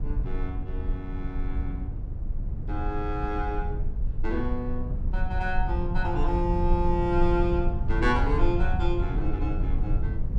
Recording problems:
rumble; below 70 Hz, strongest tone 20 Hz, SNR 0 dB

